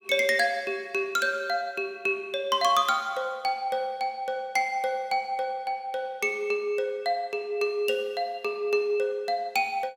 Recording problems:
none

